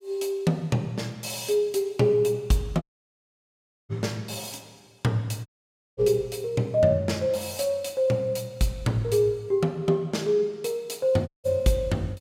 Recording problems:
dropout; at 3 s for 1 s, at 5.5 s for 0.5 s and at 11 s

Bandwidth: 16 kHz